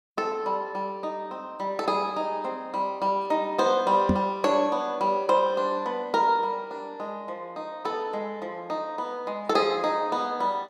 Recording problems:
microphone thump; at 4 s; peak +7 dB vs average level

